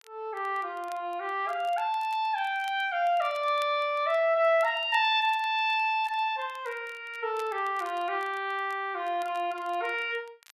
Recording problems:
crackling; vinyl, SNR 27 dB

